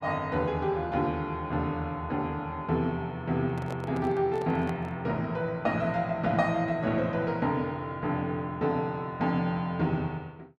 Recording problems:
handling noise; from 3.5 to 5 s; peak -6 dB vs average level

